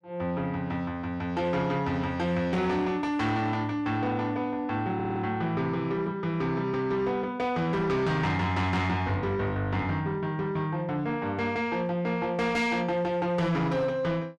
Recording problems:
distorted audio; soft clipping, signal-to-distortion ratio 11 dB
stutter; at 5 s

